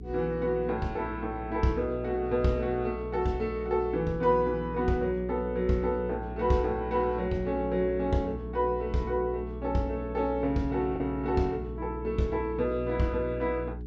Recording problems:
treble cut off; nothing above 8 kHz
electrical hum; 60 Hz, harmonics up to 420 Hz, SNR 10 dB
packet loss; 0.3% of the sound replaced, filled with the last packet

